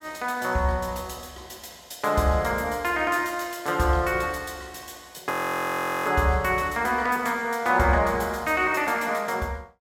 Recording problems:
frozen audio; at 5.5 s for 1 s

